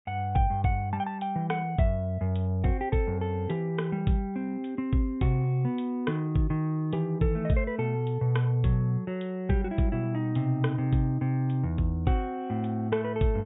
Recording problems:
treble cut off; nothing above 4 kHz

